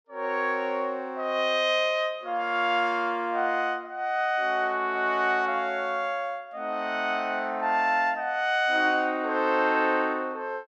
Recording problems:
none

